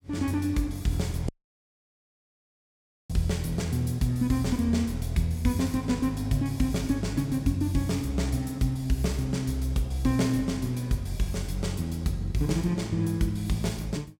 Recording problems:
dropout; at 1.5 s for 2 s

